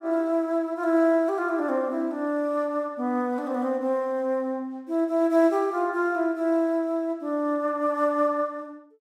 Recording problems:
none

